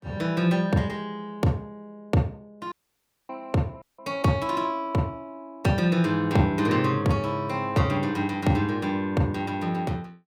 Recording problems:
dropout; at 2.5 s for 0.5 s and at 4 s

